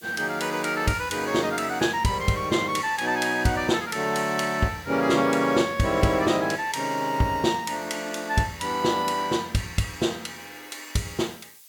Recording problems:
background hiss; slope +3 dB per octave, SNR 24 dB

